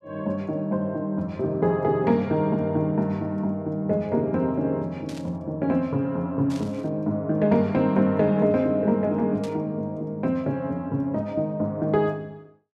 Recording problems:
static burst; at 5 s, at 6.5 s and at 9.5 s; peak -13 dB vs average level

